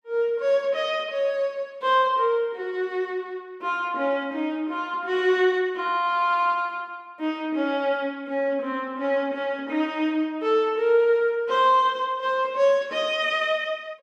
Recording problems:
none

